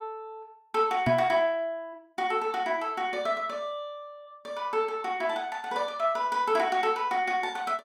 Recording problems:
knock on the microphone; at 1 s; peak +4 dB vs average level

